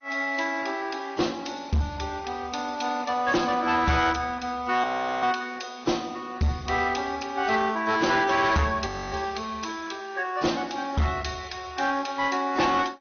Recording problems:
codec artefacts; AAC, then MP2, log-spectral distance 5 dB, nothing above 6.3 kHz
distortion; hard clipping, uneven, signal-to-distortion ratio 11 dB
frozen audio; at 5 s and at 9 s

